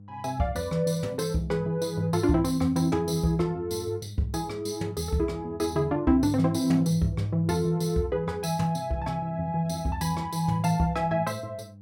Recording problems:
hum; 50 Hz, harmonics up to 500 Hz, SNR 21 dB

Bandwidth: 16.5 kHz